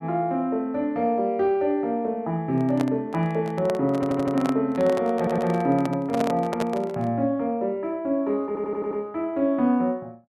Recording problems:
handling noise; from 2.5 to 7 s; peak -1 dB vs average level
stutter; at 4 s, at 5 s and at 8.5 s

